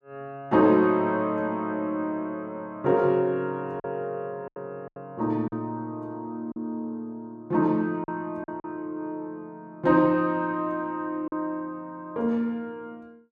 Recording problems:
lost packets; 3% of the sound replaced, filled with silence

